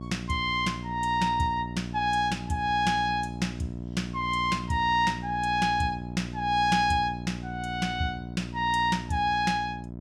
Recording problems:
mains hum; 60 Hz, harmonics up to 720 Hz, SNR 10 dB

